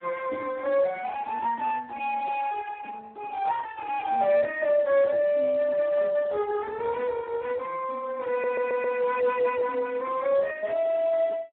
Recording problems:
phone line; 280 Hz to 2.1 kHz, Speex
stutter; at 8.5 s

